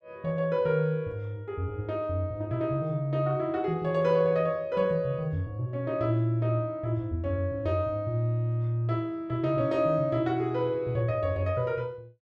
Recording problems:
none

